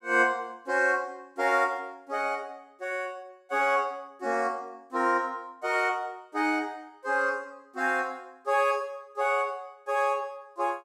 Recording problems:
none

